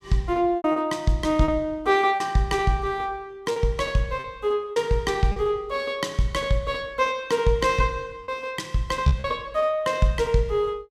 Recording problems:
packet loss; 4% of the sound replaced, filled with repeated pitch periods

